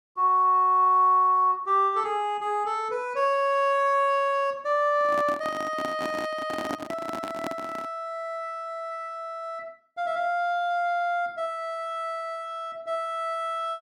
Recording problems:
handling noise; from 5 to 8 s; peak -3 dB vs average level

